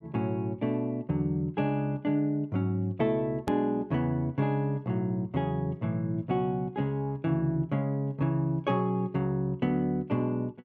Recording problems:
hard cut with a click; at 3.5 s

